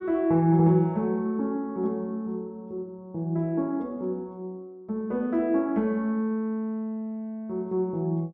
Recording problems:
none

